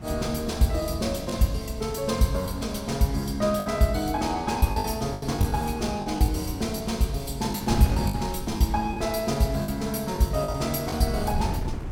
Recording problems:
wind noise; below 200 Hz, SNR 11 dB
packet loss; 7% of the sound replaced, filled with the last packet

